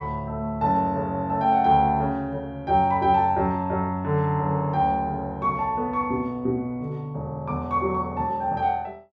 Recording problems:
none

